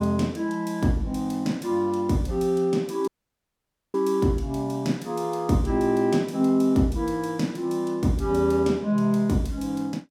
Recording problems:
audio cutting out; at 3 s for 1 s

